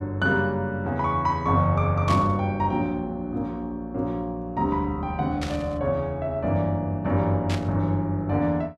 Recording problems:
static burst; at 2 s, at 5.5 s and at 7.5 s; peak -5 dB vs average level

